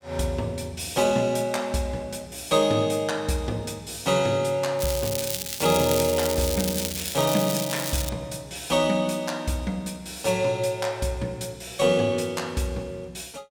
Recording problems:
crackling; from 5 to 8 s; loose cable, SNR 4 dB

